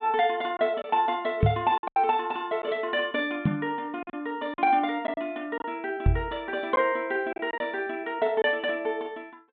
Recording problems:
treble missing; nothing above 4 kHz
packet loss; 5% of the sound replaced, filled with silence
knock on the microphone; at 1.5 s, at 3.5 s and at 6 s; peak +9 dB vs average level

